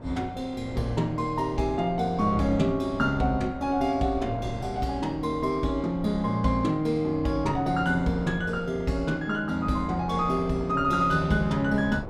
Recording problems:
wind on the microphone; below 450 Hz, SNR 14 dB

